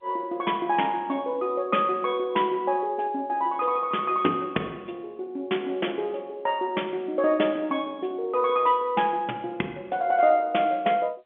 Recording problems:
phone line; 220 Hz to 3.4 kHz, G.711

